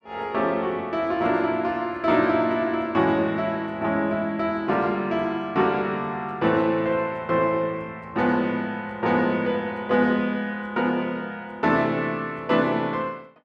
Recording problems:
none

